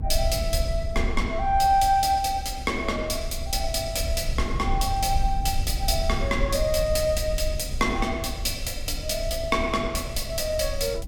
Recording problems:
low-frequency rumble; below 68 Hz, SNR 6 dB

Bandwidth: 17 kHz